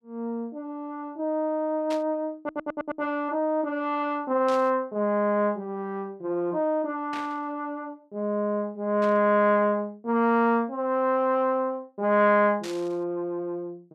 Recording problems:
static burst; 5 times, first at 2 s; peak -9 dB vs average level
audio stuttering; at 2.5 s

